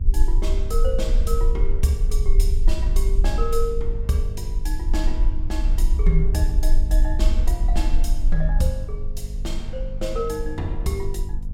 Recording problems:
hum; 50 Hz, harmonics up to 500 Hz, SNR 10 dB
low-frequency rumble; below 44 Hz, strongest tone 22 Hz, SNR -4 dB

